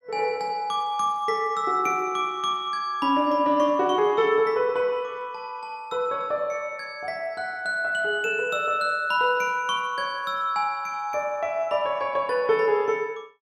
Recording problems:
none

